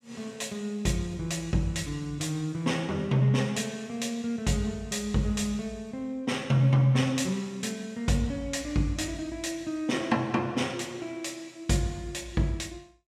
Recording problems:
none

